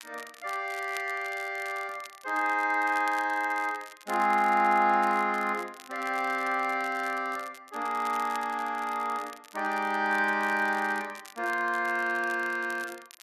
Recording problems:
crackle; vinyl, SNR 21 dB

